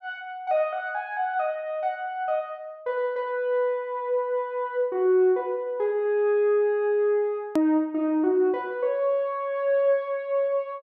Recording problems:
click at an edit; at 7.5 s

